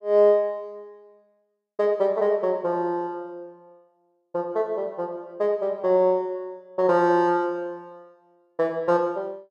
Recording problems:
none

